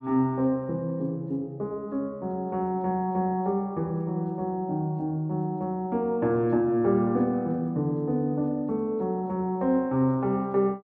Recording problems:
none

